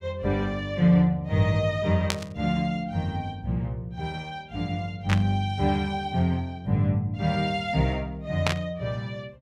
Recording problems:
burst of static; at 2 s, at 5 s and at 8.5 s; peak +5 dB vs average level

